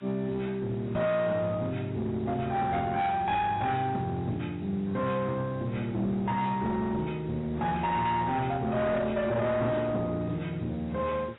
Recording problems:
lossy codec; AAC, log-spectral distance 7 dB, nothing above 3.8 kHz
distorted audio; hard clipping, uneven, signal-to-distortion ratio 10 dB
hiss; SNR 27 dB

